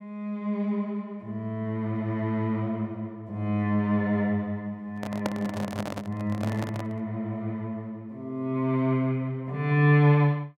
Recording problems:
microphone handling noise; from 5 to 7 s; peak +1 dB vs average level

